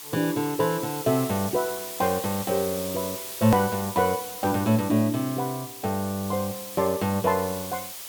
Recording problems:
hiss; slope +1 dB per octave, SNR 9 dB
hard cut with a click; at 3.5 s

